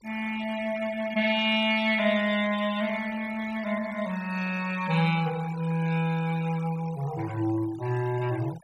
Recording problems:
denoising artefacts; signal-to-artefact ratio 17 dB

